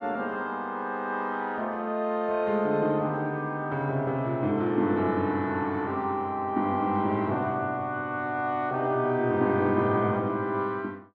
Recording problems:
none

